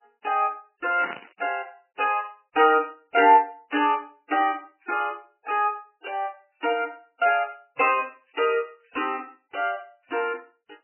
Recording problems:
lossy codec; MP3, log-spectral distance 5 dB, nothing above 2.8 kHz
static burst; at 1 s and at 4.5 s; peak -4 dB vs average level

